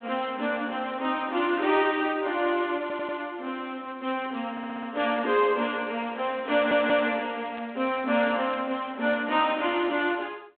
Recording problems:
phone line; 240 Hz to 3.5 kHz, G.726
audio stuttering; at 3 s, at 4.5 s and at 6.5 s
burst of static; at 5 s and at 7.5 s; peak -13 dB vs average level

